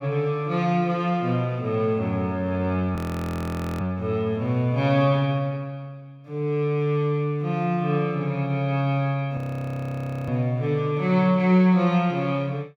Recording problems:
audio freezing; at 3 s for 1 s and at 9.5 s for 1 s

